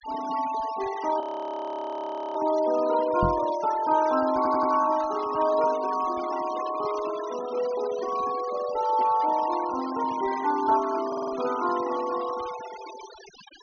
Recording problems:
low-pass filter; nothing above 6.5 kHz
noise reduction artefacts; signal-to-artefact ratio 15 dB
audio freezing; at 1 s for 1 s
knock on the microphone; at 3 s; peak +1 dB vs average level
stutter; at 4.5 s and at 11 s

